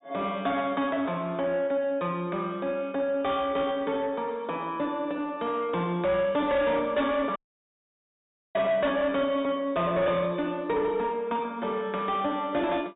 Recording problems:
treble missing; nothing above 4 kHz
distortion; soft clipping, signal-to-distortion ratio 10 dB
audio cutting out; at 7.5 s for 1 s

